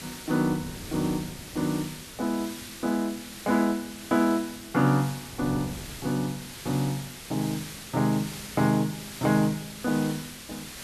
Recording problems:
hiss; SNR 12 dB
wind on the microphone; below 320 Hz, SNR 20 dB

